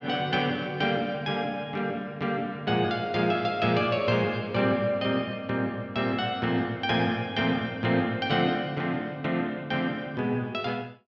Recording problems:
none

